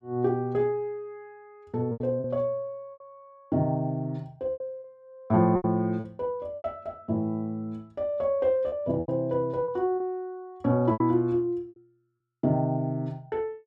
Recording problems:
lost packets; 7% of the sound replaced, filled with repeated pitch periods

